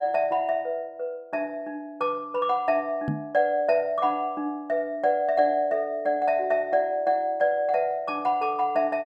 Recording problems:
knock on the microphone; at 3 s; peak +1 dB vs average level

